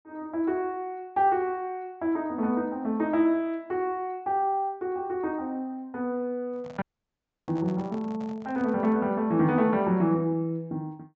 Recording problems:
treble missing; nothing above 8 kHz
microphone handling noise; from 6.5 to 9 s; peak -12 dB vs average level
audio cutting out; at 7 s for 0.5 s

